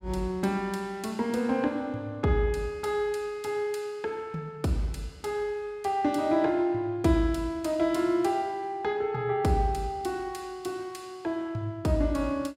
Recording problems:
none

